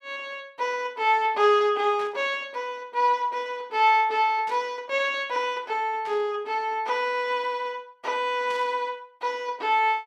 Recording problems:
static burst; 4 times, first at 2 s; peak -14 dB vs average level

